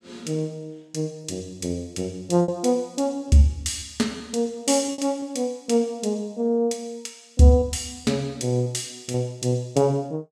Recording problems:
packet loss; 3% of the sound replaced, filled with repeated pitch periods

